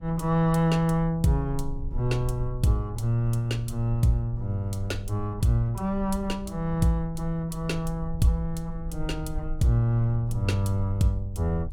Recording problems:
low-frequency rumble; below 56 Hz, strongest tone 24 Hz, SNR 12 dB

